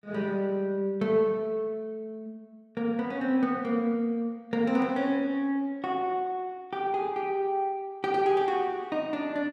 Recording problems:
none

